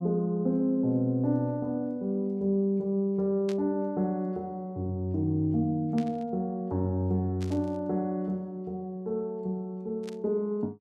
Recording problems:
static burst; 4 times, first at 3.5 s; peak -10 dB vs average level

